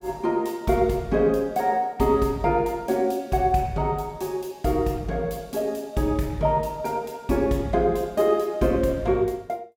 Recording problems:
none

